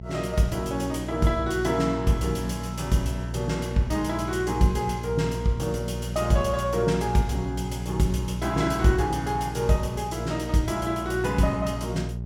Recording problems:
electrical hum; 60 Hz, harmonics up to 600 Hz, SNR 8 dB

